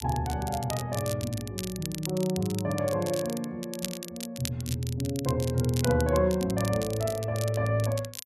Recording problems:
crackle; vinyl, SNR 10 dB

